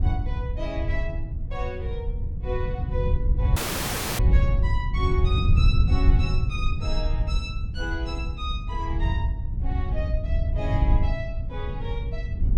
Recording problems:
wind on the microphone; below 94 Hz, SNR -8 dB
dropout; at 3.5 s for 0.5 s

